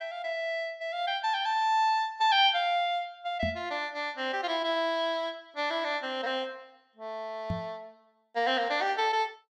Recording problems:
knock on the microphone; at 3.5 s and at 7.5 s; peak -1 dB vs average level

